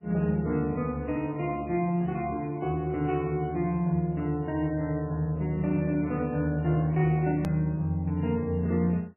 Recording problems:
lossy codec; MP3, log-spectral distance 2 dB, nothing above 13.7 kHz
click at an edit; at 7.5 s

